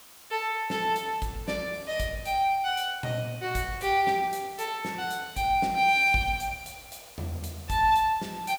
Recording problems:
hiss; SNR 21 dB

